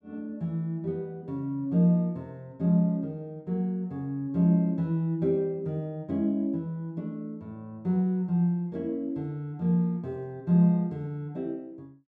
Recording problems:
none

